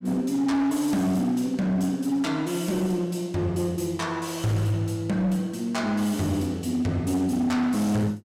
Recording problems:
distorted audio; hard clipping, signal-to-distortion ratio 11 dB

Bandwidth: 16 kHz